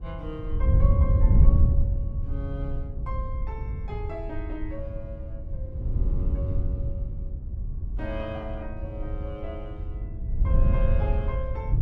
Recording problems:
wind noise; below 86 Hz, SNR -10 dB

